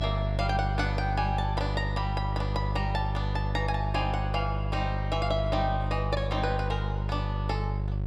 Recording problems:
electrical hum; 50 Hz, harmonics up to 550 Hz, SNR -1 dB

